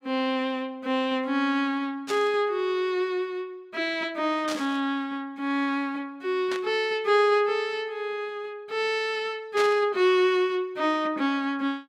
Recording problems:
burst of static; 4 times, first at 2 s; peak -3 dB vs average level

